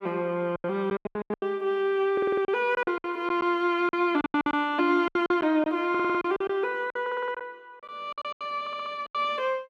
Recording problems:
packet loss; 16% of the sound replaced, filled with silence
stutter; 4 times, first at 2 s

